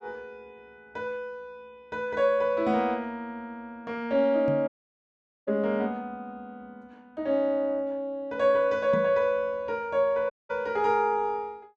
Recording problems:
knock on the microphone; at 4.5 s and at 9 s; peak -3 dB vs average level
dropout; at 4.5 s for 1 s and at 10 s

